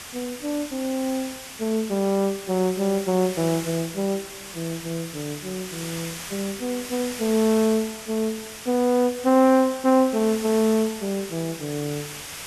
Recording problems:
background hiss; slope 0 dB per octave, SNR 11 dB

